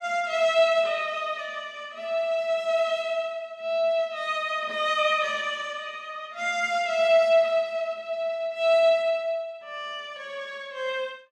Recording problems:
none

